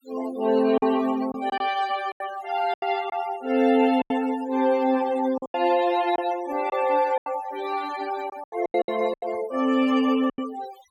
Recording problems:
denoising artefacts; signal-to-artefact ratio 15 dB
packet loss; 9% of the sound replaced, filled with silence

